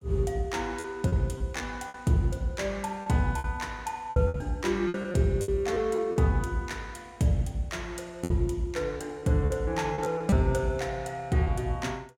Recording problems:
packet loss; 8% of the sound replaced, filled with repeated pitch periods

